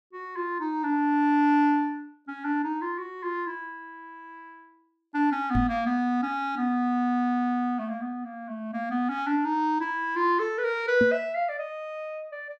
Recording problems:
knock on the microphone; at 5.5 s and at 11 s; peak +4 dB vs average level

